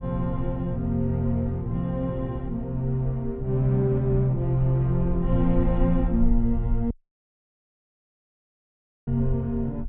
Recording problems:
treble cut off; nothing above 4 kHz
rumble; below 48 Hz, strongest tone 18 Hz, SNR 9 dB
audio cutting out; at 7 s for 2 s

